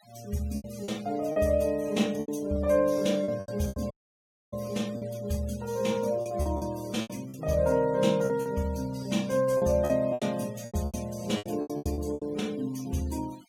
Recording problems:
denoising artefacts; signal-to-artefact ratio 21 dB
lost packets; 12% of the sound replaced, filled with repeated pitch periods
audio cutting out; at 4 s for 0.5 s

